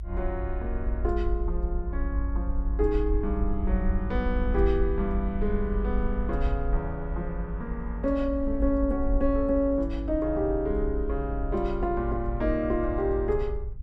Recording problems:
low-frequency rumble; below 54 Hz, SNR 3 dB

